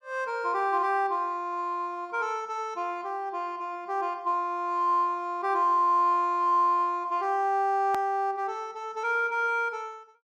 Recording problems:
edit click; at 8 s

